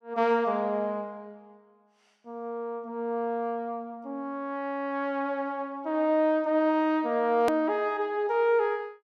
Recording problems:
edit click; at 7.5 s

